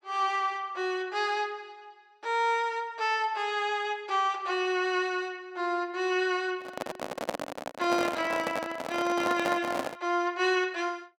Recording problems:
handling noise; from 6.5 to 10 s; peak +2 dB vs average level

